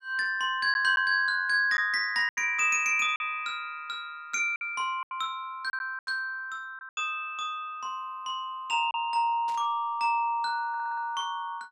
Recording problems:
packet loss; 5% of the sound replaced, filled with silence
burst of static; at 6 s and at 9.5 s; peak -14 dB vs average level
audio stuttering; at 11 s

